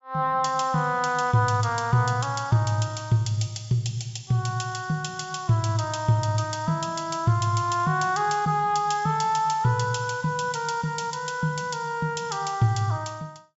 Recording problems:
treble missing; nothing above 8 kHz

